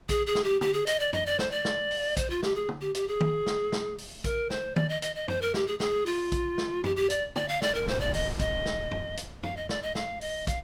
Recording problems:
wind noise; below 310 Hz, SNR 13 dB

